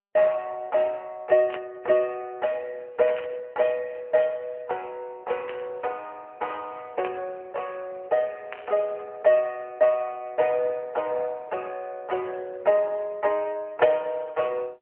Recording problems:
phone line; 320 Hz to 3.1 kHz, AMR-NB
burst of static; 5 times, first at 1.5 s; peak -5 dB vs average level

